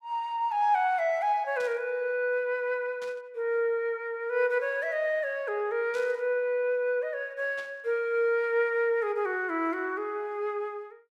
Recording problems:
burst of static; 4 times, first at 1.5 s; peak -13 dB vs average level

